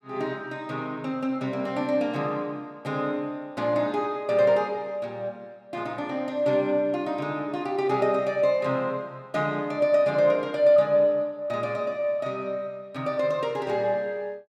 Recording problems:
none

